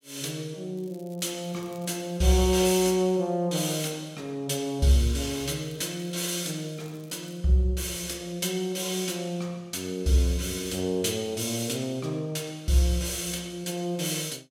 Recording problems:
crackle; from 1 to 2 s, from 5 to 7.5 s and at 11 s; loose cable, SNR 27 dB

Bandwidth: 16 kHz